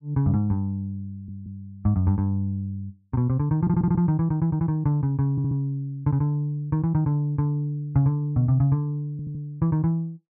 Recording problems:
stutter; 4 times, first at 1 s

